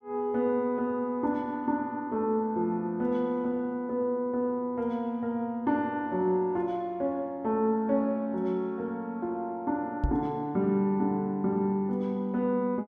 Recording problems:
microphone thump; at 10 s; peak +5 dB vs average level

